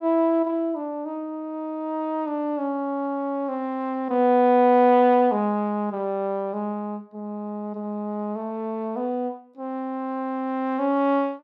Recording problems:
none

